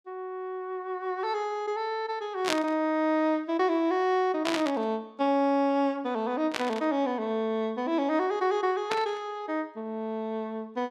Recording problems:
burst of static; 4 times, first at 2.5 s; peak +3 dB vs average level

